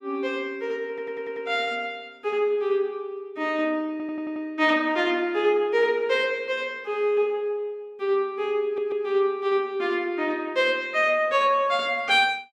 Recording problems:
audio stuttering; at 1 s, at 4 s and at 8.5 s

